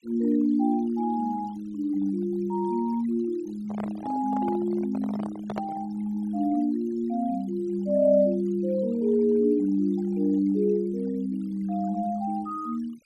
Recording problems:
denoising artefacts; signal-to-artefact ratio 23 dB
handling noise; from 3.5 to 6 s; peak -4 dB vs average level

